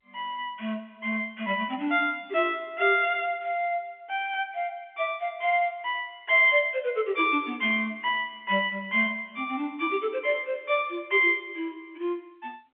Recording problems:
phone line; 190 Hz to 3.4 kHz, G.711

